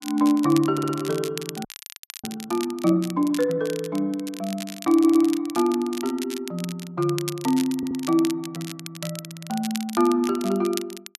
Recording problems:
crackle; vinyl, SNR 14 dB
audio stuttering; at 0.5 s, at 5 s and at 8 s
frozen audio; at 1.5 s for 0.5 s

